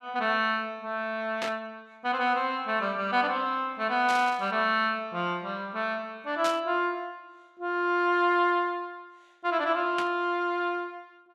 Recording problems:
static burst; 4 times, first at 1.5 s; peak -2 dB vs average level

